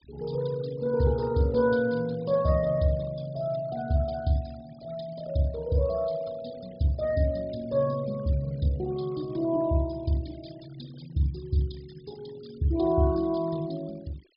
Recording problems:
low-pass filter; nothing above 5.5 kHz
denoising artefacts; signal-to-artefact ratio 23 dB

